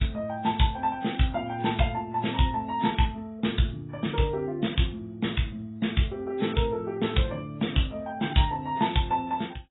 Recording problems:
lossy codec; AAC, log-spectral distance 5 dB, nothing above 3.8 kHz

